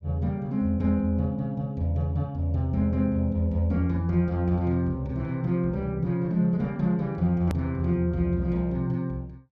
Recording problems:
hard cut with a click; at 7.5 s

